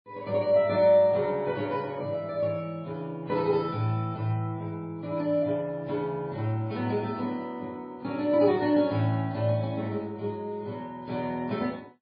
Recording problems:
lossy compression; MP3, then AAC, log-spectral distance 2 dB, nothing above 4.4 kHz

